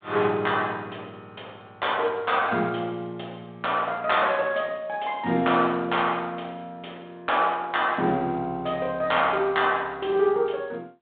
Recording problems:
phone line; 86 Hz to 3.7 kHz, G.726

